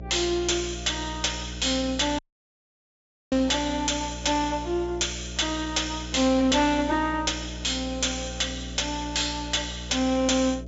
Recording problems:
treble cut off; nothing above 7.3 kHz
distorted audio; hard clipping, uneven, signal-to-distortion ratio 6 dB
electrical hum; 60 Hz, harmonics up to 660 Hz, SNR 12 dB
audio cutting out; at 2 s for 1 s

